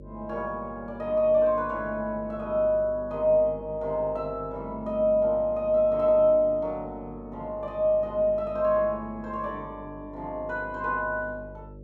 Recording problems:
hum; 50 Hz, harmonics up to 600 Hz, SNR 19 dB

